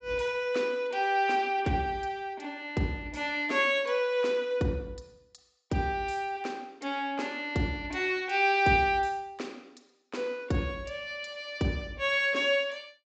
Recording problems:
low-pass filter; nothing above 8 kHz

